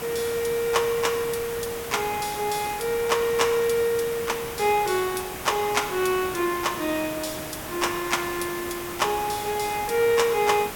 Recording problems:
hiss; slope -4 dB per octave, SNR 9 dB

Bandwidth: 17 kHz